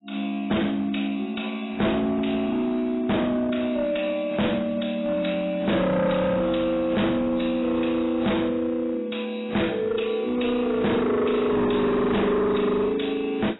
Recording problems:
codec artefacts; AAC, log-spectral distance 5 dB, nothing above 3.9 kHz
distorted audio; hard clipping, uneven, signal-to-distortion ratio 7 dB

